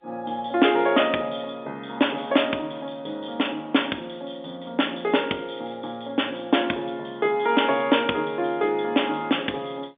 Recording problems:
telephone audio; 190 Hz to 3.6 kHz, G.711

